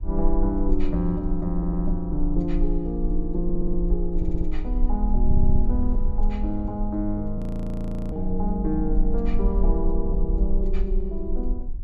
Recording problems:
low-frequency rumble; below 40 Hz, strongest tone 18 Hz, SNR 1 dB
wind noise; below 72 Hz, SNR 11 dB
stutter; 4 times, first at 1.5 s
frozen audio; at 7.5 s for 0.5 s

